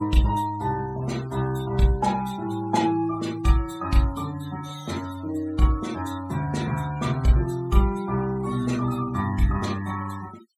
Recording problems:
noise reduction artefacts; signal-to-artefact ratio 17 dB

